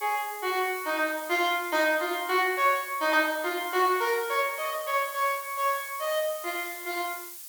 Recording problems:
background hiss; slope +4 dB per octave, SNR 13 dB

